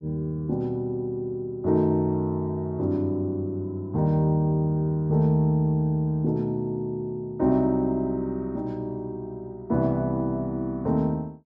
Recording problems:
none

